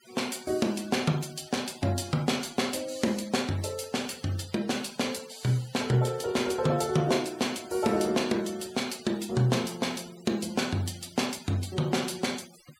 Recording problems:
denoising artefacts; signal-to-artefact ratio 18 dB

